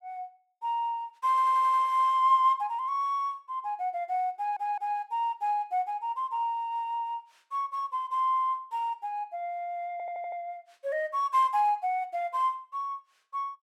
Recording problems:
audio stuttering; at 1.5 s, at 4.5 s and at 10 s

